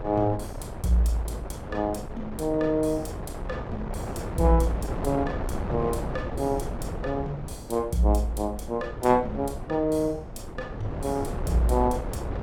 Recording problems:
wind noise; below 520 Hz, SNR 7 dB

